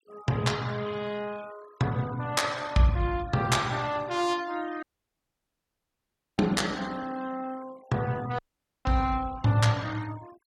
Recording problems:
noise reduction artefacts; signal-to-artefact ratio 20 dB
audio cutting out; at 5 s for 1.5 s and at 8.5 s

